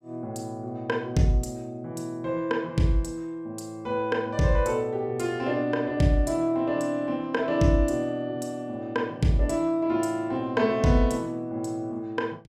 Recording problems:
none

